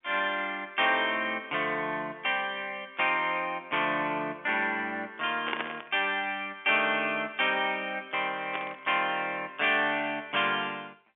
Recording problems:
telephone audio; 190 Hz to 3.4 kHz, G.711
burst of static; at 5.5 s and at 8.5 s; peak +1 dB vs average level

